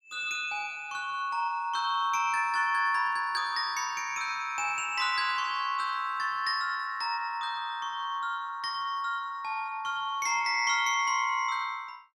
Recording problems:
none

